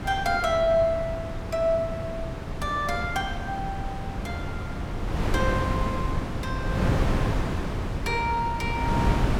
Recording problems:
wind on the microphone; below 370 Hz, SNR 2 dB

